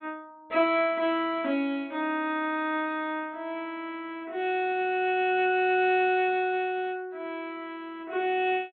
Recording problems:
treble cut off; nothing above 4 kHz

